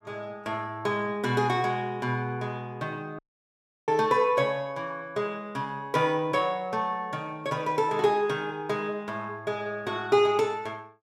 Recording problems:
dropout; at 3 s for 0.5 s

